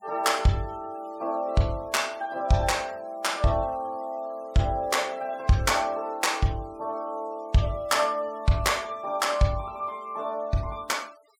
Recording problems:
denoising artefacts; signal-to-artefact ratio 25 dB

